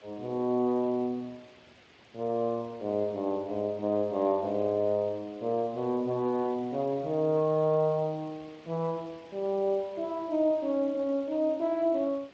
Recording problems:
lossy compression; Speex, log-spectral distance 3 dB
background hiss; SNR 25 dB

